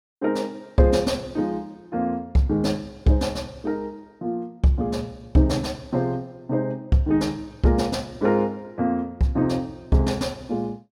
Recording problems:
none

